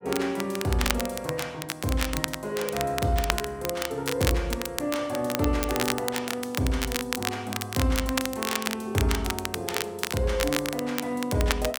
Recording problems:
crackling; vinyl, SNR 3 dB

